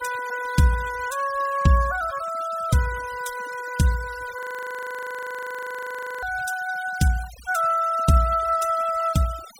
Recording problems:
denoising artefacts; signal-to-artefact ratio 17 dB
frozen audio; at 4.5 s for 2 s

